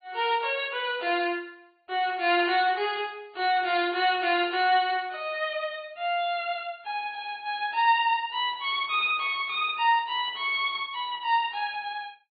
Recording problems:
treble missing; nothing above 4.1 kHz
lossy codec; AAC, log-spectral distance 2 dB

